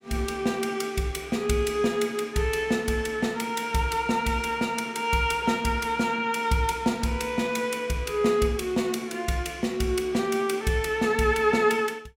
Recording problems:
none

